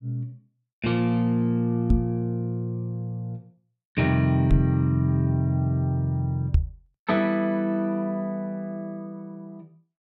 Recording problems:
microphone thump; at 2 s, at 4.5 s and at 6.5 s; peak +8 dB vs average level

